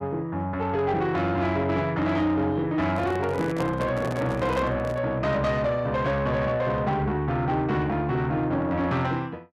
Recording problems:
distorted audio; soft clipping, signal-to-distortion ratio 12 dB
microphone handling noise; from 3 to 5 s; peak -2 dB vs average level

